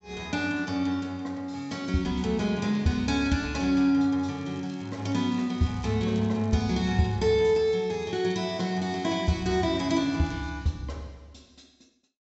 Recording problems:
low-pass filter; nothing above 7.7 kHz
crackle; from 4 to 11 s; loose cable, SNR 29 dB

